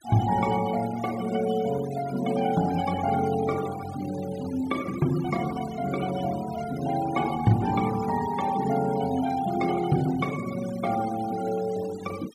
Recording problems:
denoising artefacts; signal-to-artefact ratio 15 dB

